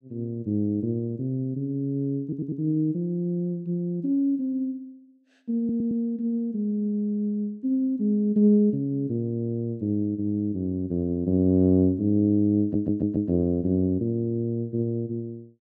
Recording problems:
stutter; at 2 s, at 5.5 s and at 13 s

